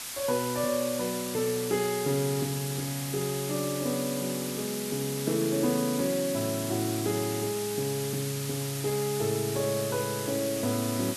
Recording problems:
background hiss; slope +2 dB per octave, SNR 5 dB

